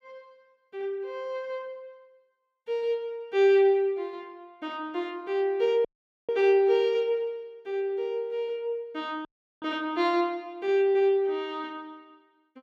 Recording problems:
dropout; at 6 s and at 9.5 s

